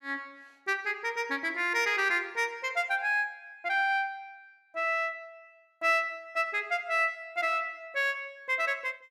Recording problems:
none

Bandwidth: 14.5 kHz